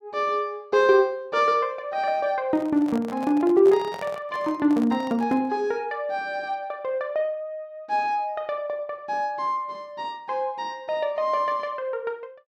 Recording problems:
microphone handling noise; from 2.5 to 5.5 s; peak -9 dB vs average level

